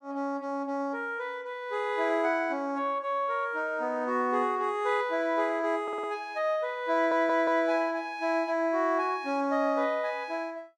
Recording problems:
audio stuttering; at 6 s and at 7 s

